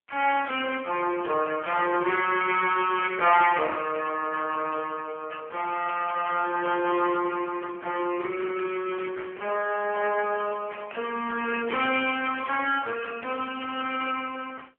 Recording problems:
telephone audio; 280 Hz to 3.1 kHz, AMR-NB

